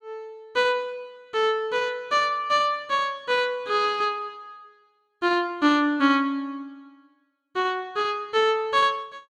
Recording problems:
none

